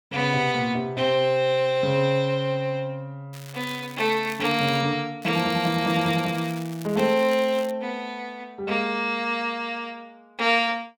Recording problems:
crackle; from 3.5 to 5 s and from 5 to 7.5 s; loose cable, SNR 19 dB

